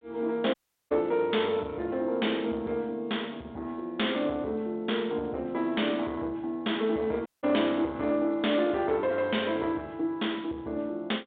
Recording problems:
phone line; 220 Hz to 3.7 kHz, G.726
distorted audio; soft clipping, signal-to-distortion ratio 12 dB
dropout; at 0.5 s and at 7.5 s

